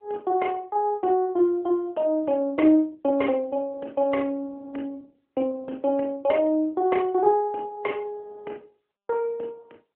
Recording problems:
telephone audio; 280 Hz to 3.2 kHz, AMR-NB

